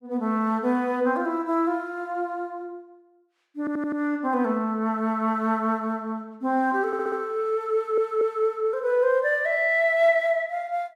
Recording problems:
audio stuttering; at 3.5 s, at 7 s and at 7.5 s

